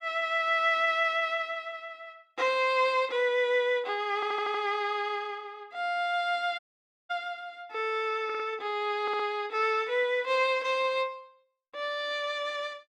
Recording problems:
stutter; at 4 s, at 8.5 s and at 9 s
dropout; at 6.5 s for 0.5 s

